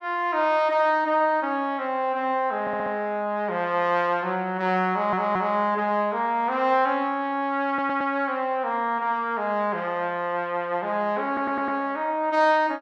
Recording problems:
audio stuttering; 4 times, first at 2.5 s

